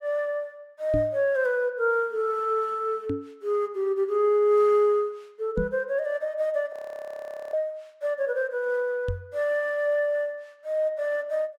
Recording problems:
microphone bump; 4 times, first at 1 s; peak 0 dB vs average level
frozen audio; at 6.5 s for 1 s

